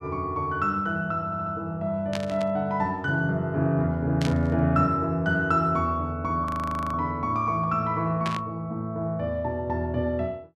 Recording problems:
stutter; at 1.5 s
burst of static; at 2 s, at 4 s and at 8.5 s; peak -2 dB vs average level
audio freezing; at 6.5 s

